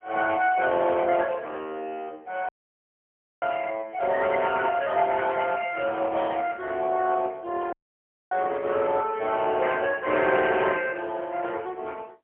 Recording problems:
telephone audio; 280 Hz to 3.3 kHz, AMR-NB, then MP3
audio cutting out; at 2.5 s for 1 s and at 7.5 s for 0.5 s

